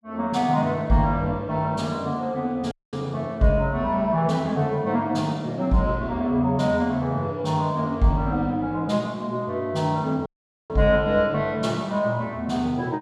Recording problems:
audio cutting out; at 2.5 s and at 10 s

